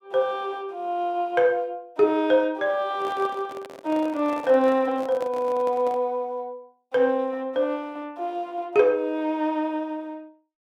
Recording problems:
microphone handling noise; from 3 to 6 s; peak -8 dB vs average level

